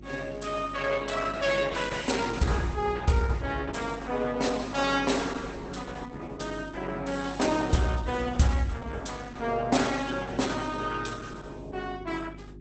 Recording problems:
lossy codec; Opus, log-spectral distance 5 dB, nothing above 8.2 kHz
hum; 50 Hz, harmonics up to 400 Hz, SNR 16 dB

